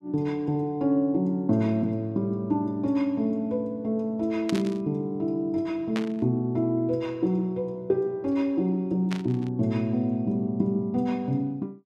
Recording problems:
burst of static; at 4.5 s, at 6 s and at 9 s; peak -3 dB vs average level

